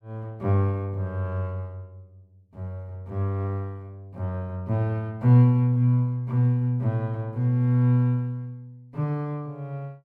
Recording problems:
none

